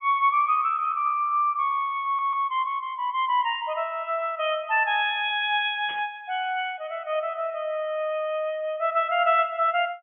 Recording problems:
low-pass filter; nothing above 3.3 kHz
audio stuttering; at 2 s
static burst; at 6 s; peak -13 dB vs average level

